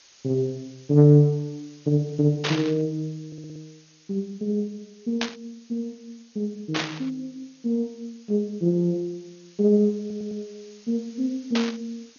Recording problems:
codec artefacts; MP2, log-spectral distance 9 dB
hiss; slope +2 dB per octave, SNR 28 dB
burst of static; 4 times, first at 2.5 s; peak +2 dB vs average level
stutter; at 3.5 s and at 10 s

